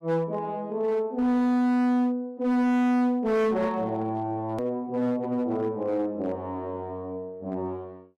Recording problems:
distortion; hard clipping, uneven, signal-to-distortion ratio 6 dB
edit click; at 4.5 s

